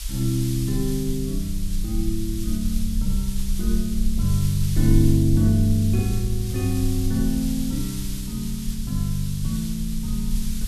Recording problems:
background hiss; slope +5 dB per octave, SNR 12 dB
rumble; below 44 Hz, SNR 7 dB

